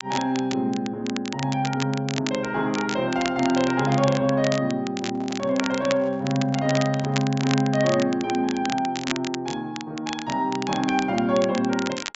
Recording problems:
treble missing; nothing above 8 kHz
crackle; vinyl, SNR 10 dB
microphone handling noise; from 5 to 7.5 s; peak -13 dB vs average level

